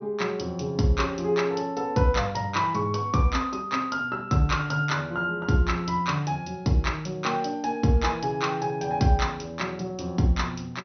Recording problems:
low-pass filter; nothing above 6.2 kHz

